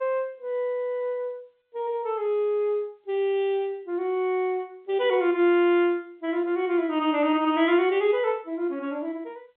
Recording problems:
phone line; 260 Hz to 3.7 kHz, G.711

